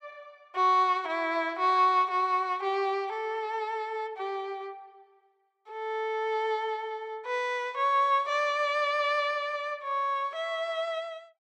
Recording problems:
none

